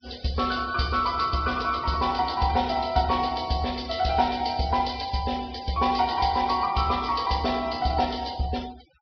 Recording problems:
low-pass filter; nothing above 5.5 kHz
noise reduction artefacts; signal-to-artefact ratio 19 dB

